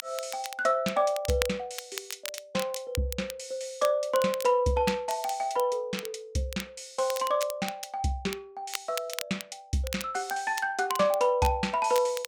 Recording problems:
crackle; vinyl, SNR 12 dB

